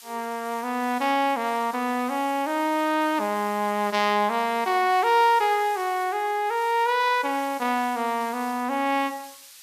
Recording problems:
hiss; slope +5 dB per octave, SNR 20 dB

